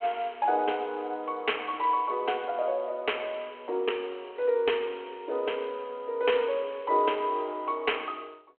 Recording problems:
phone line; 300 Hz to 3.3 kHz, G.726

